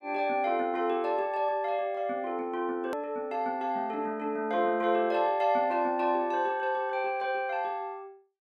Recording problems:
hard cut with a click; at 3 s

